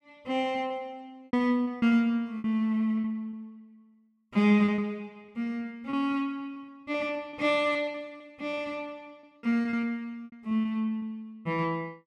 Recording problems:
lost packets; 10% of the sound replaced, filled with repeated pitch periods

